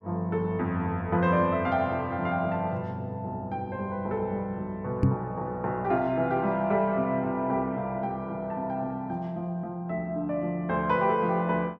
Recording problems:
microphone bump; at 5 s; peak +9 dB vs average level

